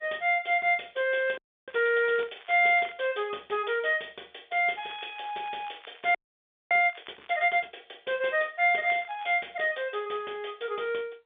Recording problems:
telephone audio; 300 Hz to 3.6 kHz, G.711
crackling; from 1 to 3 s, from 4.5 to 7.5 s and at 9 s; loose cable, SNR 25 dB
frozen audio; at 1.5 s and at 6 s for 0.5 s

